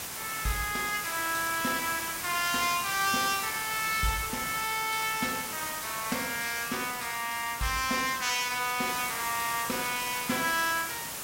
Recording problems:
hiss; slope -1 dB per octave, SNR 5 dB

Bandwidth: 16 kHz